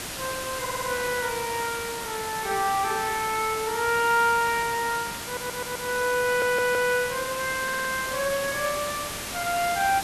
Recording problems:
background hiss; slope -2 dB per octave, SNR 6 dB
audio stuttering; 4 times, first at 0.5 s

